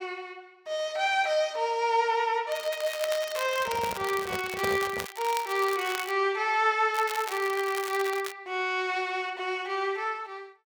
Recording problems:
crackle; from 2.5 to 6 s and from 7 to 8.5 s; loose cable, SNR 11 dB
handling noise; from 3.5 to 5 s; peak -2 dB vs average level

